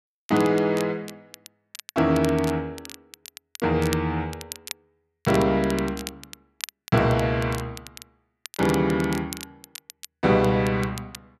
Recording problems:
crackle; vinyl, SNR 16 dB

